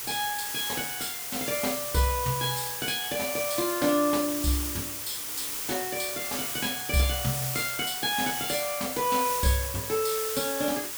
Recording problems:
background hiss; slope 0 dB per octave, SNR 2 dB

